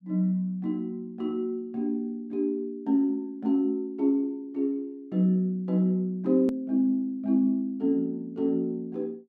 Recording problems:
click at an edit; at 6.5 s

